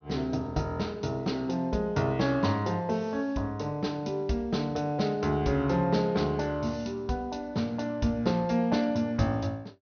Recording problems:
treble missing; nothing above 6.3 kHz

